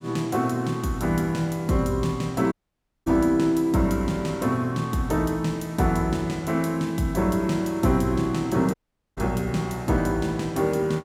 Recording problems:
dropout; at 2.5 s for 0.5 s and at 8.5 s

